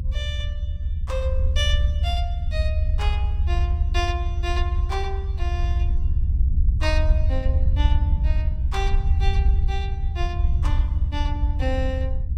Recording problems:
low-frequency rumble; below 78 Hz, SNR -8 dB

